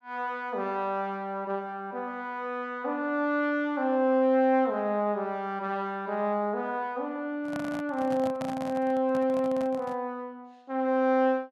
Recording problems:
handling noise; from 7.5 to 10 s; peak -5 dB vs average level

